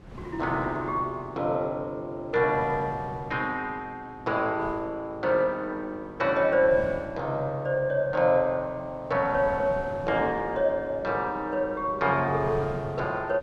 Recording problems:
wind noise; below 450 Hz, SNR 17 dB

